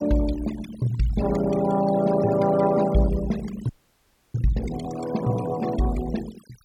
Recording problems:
denoising artefacts; signal-to-artefact ratio 16 dB
frozen audio; at 3.5 s for 0.5 s

